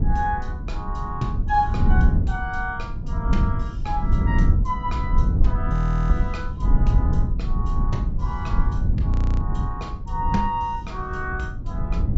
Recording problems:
treble missing; nothing above 8 kHz
rumble; below 96 Hz, SNR -5 dB
audio freezing; at 5.5 s and at 9 s

